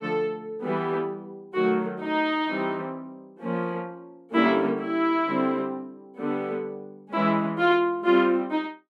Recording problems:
none

